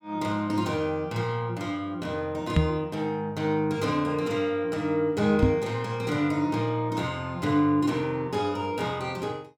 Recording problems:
microphone thump; at 2.5 s and at 5.5 s; peak +8 dB vs average level

